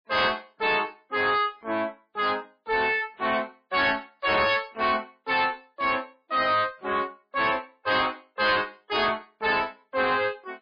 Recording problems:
lossy codec; MP3, log-spectral distance 4 dB, nothing above 5 kHz
distortion; soft clipping, signal-to-distortion ratio 7 dB

